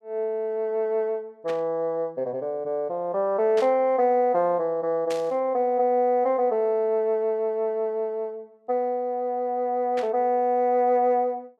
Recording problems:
burst of static; 4 times, first at 1.5 s; peak -8 dB vs average level

